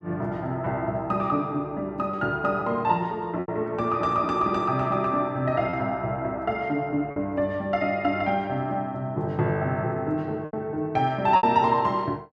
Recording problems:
lost packets; 3% of the sound replaced, filled with repeated pitch periods

